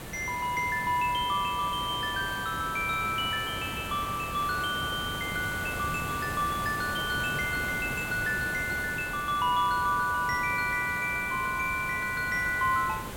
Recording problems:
hiss; slope -5 dB per octave, SNR 9 dB

